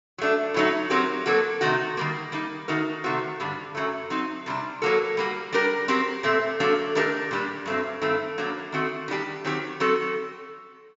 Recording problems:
treble missing; nothing above 8 kHz

